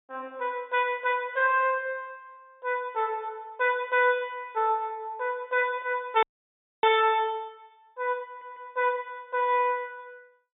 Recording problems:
treble cut off; nothing above 4 kHz
audio freezing; at 6 s for 0.5 s
audio stuttering; at 8.5 s

